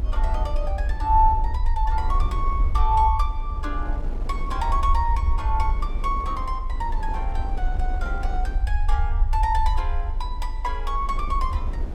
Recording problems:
low-frequency rumble; below 58 Hz, strongest tone 28 Hz, SNR 0 dB
wind on the microphone; below 400 Hz, SNR 13 dB

